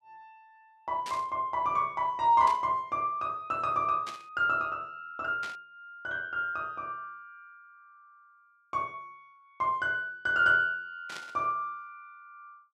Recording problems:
burst of static; 5 times, first at 1 s; peak -8 dB vs average level

